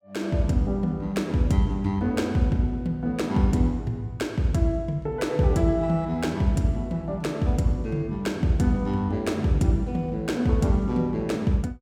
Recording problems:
none

